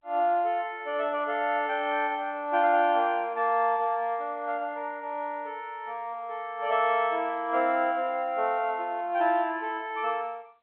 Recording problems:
phone line; 300 Hz to 3.5 kHz, G.711

